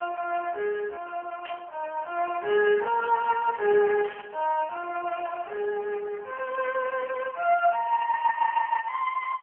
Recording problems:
phone line; 370 Hz to 2.5 kHz, AMR-NB
burst of static; at 1.5 s and at 4 s; peak -11 dB vs average level

